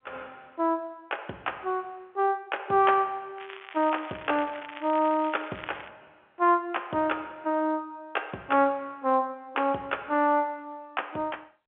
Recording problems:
telephone audio; 280 Hz to 3.4 kHz, G.711
crackling; from 3.5 to 6 s; loose cable, SNR 16 dB

